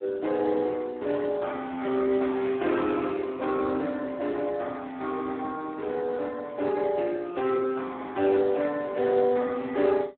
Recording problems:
phone line; 220 Hz to 2.6 kHz, Speex

